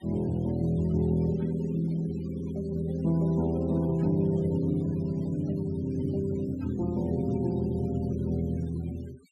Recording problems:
noise reduction artefacts; signal-to-artefact ratio 25 dB

